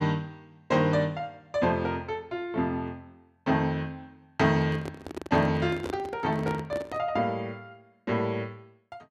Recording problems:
handling noise; from 4.5 to 7 s; peak -2 dB vs average level

